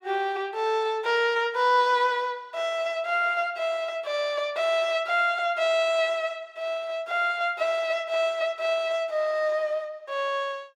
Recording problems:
none

